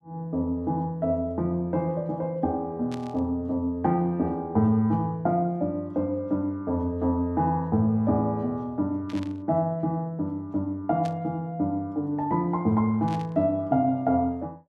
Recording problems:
static burst; 4 times, first at 3 s; peak -12 dB vs average level

